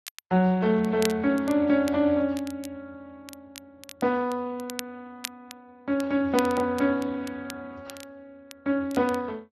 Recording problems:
lossy codec; AAC, then Speex, log-spectral distance 2 dB
crackling; vinyl, SNR 17 dB

